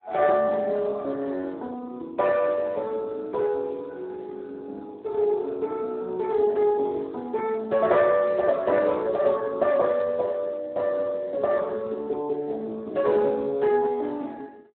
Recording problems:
telephone audio; 260 Hz to 2.5 kHz, Speex

